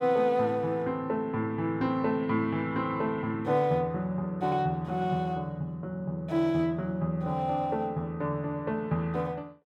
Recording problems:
none

